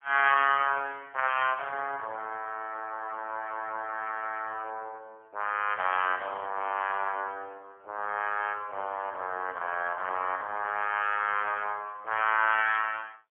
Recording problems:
phone line; 370 Hz to 3.2 kHz, AMR-NB, then MP3

